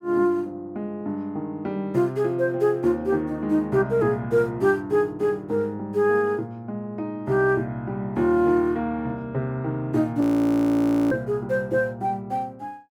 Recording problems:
frozen audio; at 10 s for 1 s

